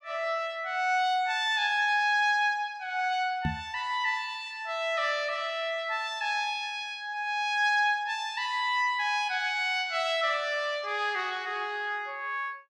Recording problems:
knock on the microphone; at 3.5 s; peak +1 dB vs average level

